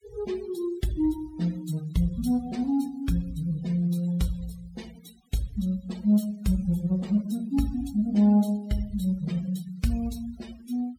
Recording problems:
noise reduction artefacts; signal-to-artefact ratio 21 dB

